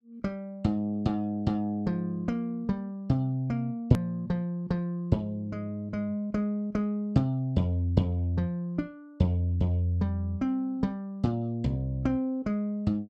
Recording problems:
hard cut with a click; at 4 s

